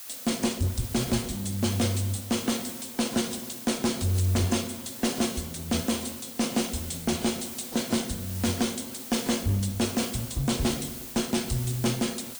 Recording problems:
lossy codec; AAC, log-spectral distance 7 dB
distortion; hard clipping, uneven, signal-to-distortion ratio 10 dB
hiss; slope +2 dB per octave, SNR 10 dB

